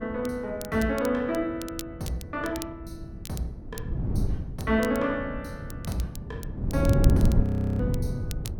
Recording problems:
wind on the microphone; below 190 Hz, SNR -2 dB
crackling; vinyl, SNR 15 dB
frozen audio; at 7.5 s

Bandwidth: 17 kHz